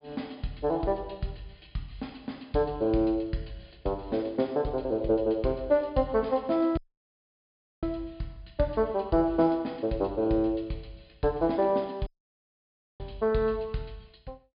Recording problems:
treble cut off; nothing above 5 kHz
audio cutting out; at 7 s for 1 s and at 12 s for 1 s

